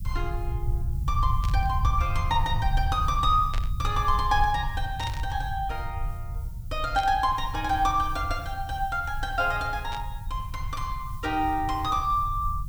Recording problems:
background hiss; SNR 25 dB
rumble; below 88 Hz, SNR 5 dB
burst of static; 5 times, first at 1.5 s; peak -6 dB vs average level

